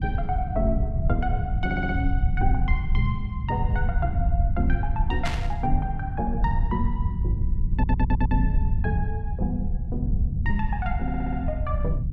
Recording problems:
low-frequency rumble; below 88 Hz, SNR -3 dB
audio stuttering; at 1.5 s, at 7.5 s and at 11 s
static burst; at 5.5 s; peak +3 dB vs average level

